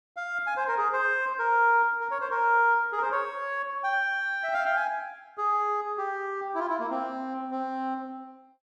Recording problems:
none

